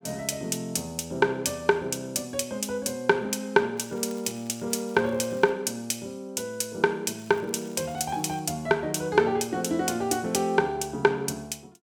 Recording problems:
crackle; from 4 to 5.5 s and from 7 to 8.5 s; loose cable, SNR 27 dB

